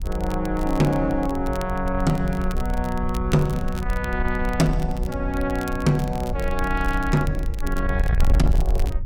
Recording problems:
distortion; soft clipping, signal-to-distortion ratio 11 dB
wind noise; below 62 Hz, SNR 4 dB
crackle; vinyl, SNR 19 dB

